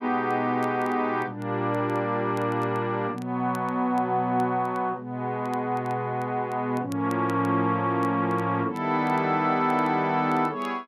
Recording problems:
crackling; vinyl, SNR 29 dB

